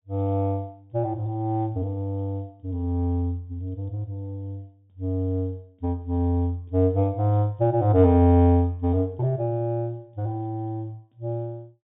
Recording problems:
treble missing; nothing above 3.7 kHz

